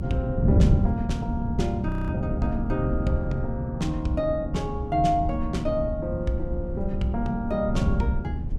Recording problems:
low-frequency rumble; below 72 Hz, SNR 8 dB
wind on the microphone; below 190 Hz, SNR 1 dB
audio freezing; at 2 s

